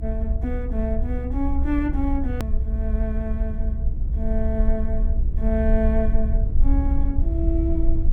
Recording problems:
rumble; below 62 Hz, SNR -3 dB
edit click; at 2.5 s

